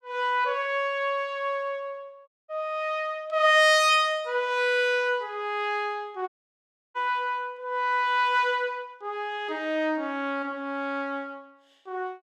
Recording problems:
dropout; at 2.5 s and at 6.5 s for 0.5 s

